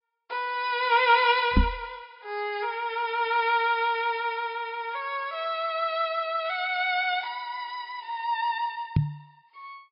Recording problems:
treble cut off; nothing above 5.2 kHz
lossy codec; Vorbis, log-spectral distance 2 dB
knock on the microphone; at 1.5 s and at 9 s; peak +8 dB vs average level

